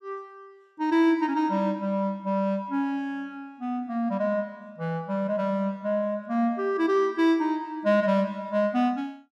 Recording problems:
none

